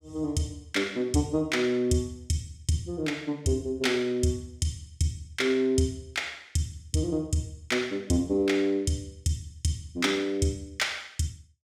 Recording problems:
none

